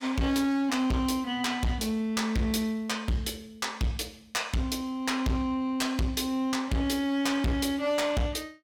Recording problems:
distortion; hard clipping, signal-to-distortion ratio 6 dB

